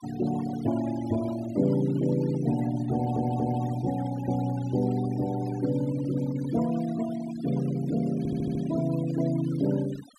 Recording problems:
denoising artefacts; signal-to-artefact ratio 16 dB
audio stuttering; at 3 s and at 8 s

